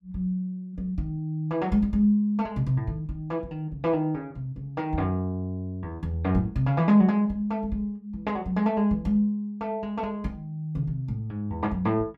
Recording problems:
none

